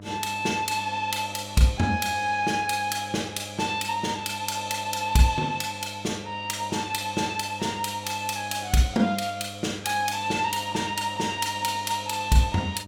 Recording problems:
electrical hum; 50 Hz, harmonics up to 1.3 kHz, SNR 17 dB

